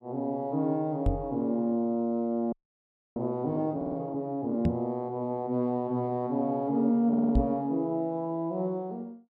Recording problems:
knock on the microphone; at 1 s, at 4.5 s and at 7.5 s; peak +6 dB vs average level
frozen audio; at 2.5 s for 0.5 s
audio stuttering; at 4 s and at 7 s

